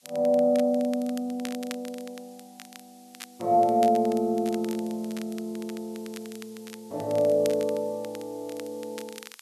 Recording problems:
background hiss; slope +4 dB per octave, SNR 27 dB
crackling; vinyl, SNR 19 dB

